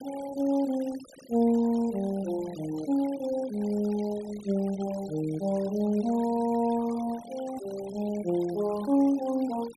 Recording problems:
denoising artefacts; signal-to-artefact ratio 20 dB

